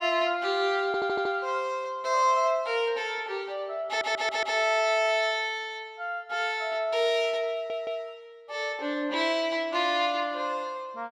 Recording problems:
audio stuttering; at 1 s, at 4 s and at 7.5 s

